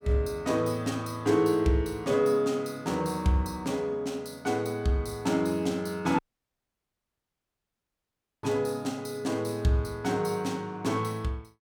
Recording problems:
dropout; at 6 s for 2 s

